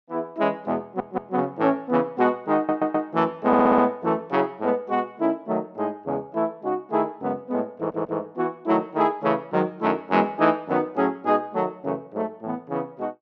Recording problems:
stutter; 4 times, first at 1 s

